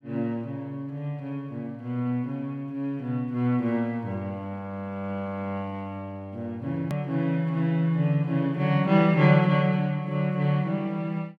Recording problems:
click at an edit; at 7 s

